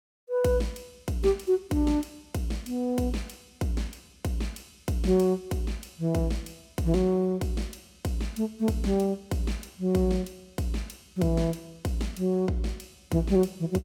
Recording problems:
none

